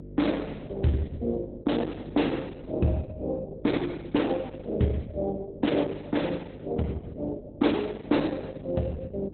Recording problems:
lossy compression; Opus, log-spectral distance 3 dB, nothing above 4 kHz
hum; 50 Hz, harmonics up to 600 Hz, SNR 15 dB

